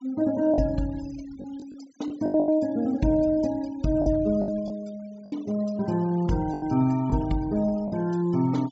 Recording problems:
treble missing; nothing above 8 kHz
denoising artefacts; signal-to-artefact ratio 23 dB
lost packets; 7% of the sound replaced, filled with the last packet

